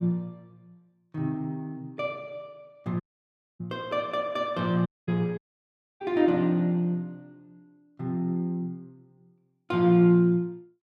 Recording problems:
dropout; at 3 s for 0.5 s, at 5 s and at 5.5 s for 0.5 s

